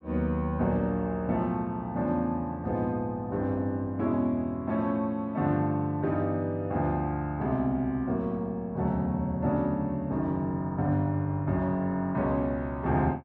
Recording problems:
none

